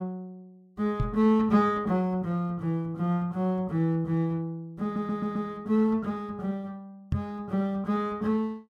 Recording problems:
knock on the microphone; at 1 s and at 7 s; peak +4 dB vs average level
audio stuttering; at 5 s

